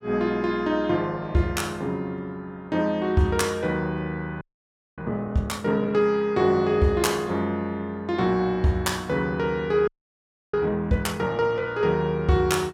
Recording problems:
audio freezing; at 4.5 s for 0.5 s and at 10 s for 0.5 s

